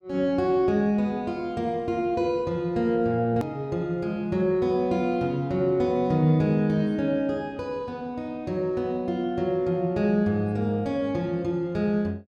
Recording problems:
hard cut with a click; at 3.5 s

